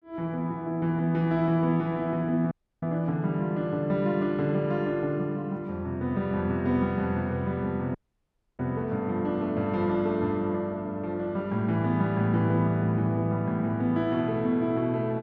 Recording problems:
audio cutting out; at 2.5 s and at 8 s for 0.5 s

